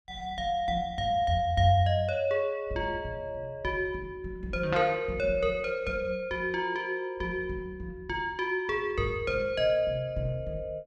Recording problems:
none

